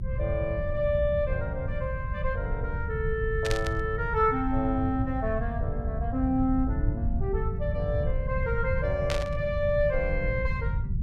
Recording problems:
rumble; below 110 Hz, SNR 2 dB
burst of static; at 3.5 s and at 9 s; peak +2 dB vs average level

